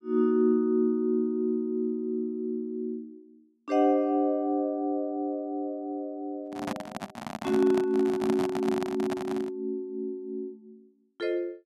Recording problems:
microphone handling noise; from 6.5 to 9.5 s; peak -1 dB vs average level

